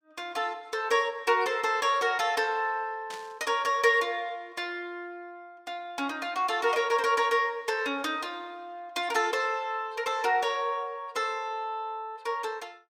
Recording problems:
static burst; at 3 s; peak -10 dB vs average level

